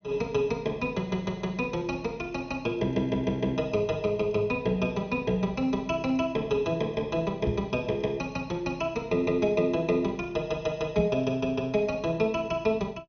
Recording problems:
treble cut off; nothing above 6.2 kHz
knock on the microphone; at 7.5 s and at 11 s; peak +3 dB vs average level

